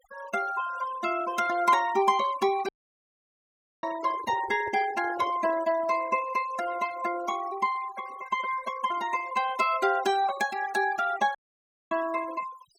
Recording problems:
noise reduction artefacts; signal-to-artefact ratio 16 dB
audio cutting out; at 2.5 s for 1 s and at 11 s for 0.5 s
microphone handling noise; from 4 to 5.5 s; peak -9 dB vs average level

